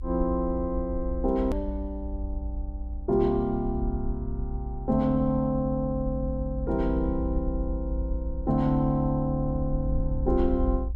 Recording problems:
rumble; below 58 Hz, SNR 6 dB
hard cut with a click; at 1.5 s

